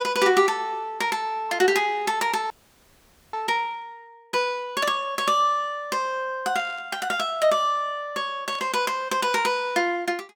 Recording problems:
frozen audio; at 2.5 s for 1 s
burst of static; at 6.5 s and at 8.5 s; peak -15 dB vs average level

